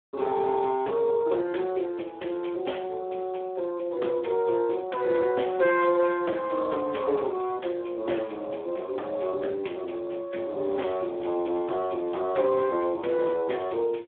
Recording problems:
telephone audio; 280 Hz to 3.5 kHz, Speex

